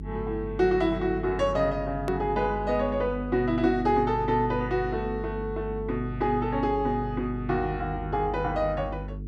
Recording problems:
electrical hum; 50 Hz, harmonics up to 450 Hz, SNR 10 dB
hard cut with a click; at 2 s

